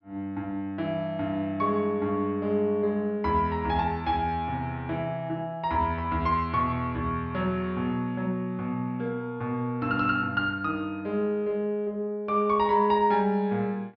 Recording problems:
low-pass filter; nothing above 5.5 kHz

